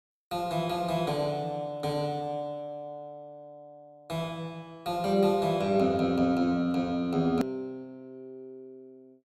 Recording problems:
hard cut with a click; at 7.5 s

